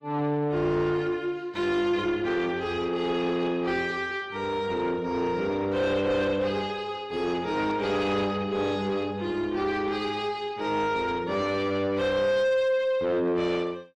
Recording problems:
lossy codec; AAC, log-spectral distance 2 dB
distorted audio; soft clipping, signal-to-distortion ratio 9 dB

